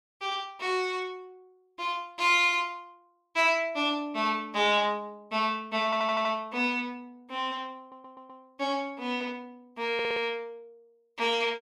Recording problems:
audio stuttering; at 6 s, at 8 s and at 10 s

